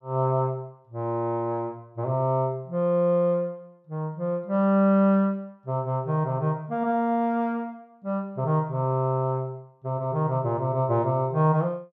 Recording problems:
none

